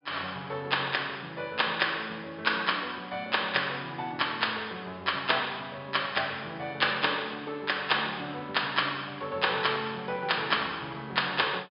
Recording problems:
low-pass filter; nothing above 5.5 kHz

